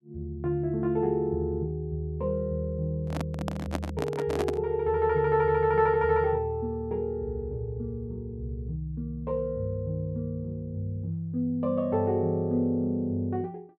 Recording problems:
handling noise; from 3 to 4.5 s; peak +1 dB vs average level

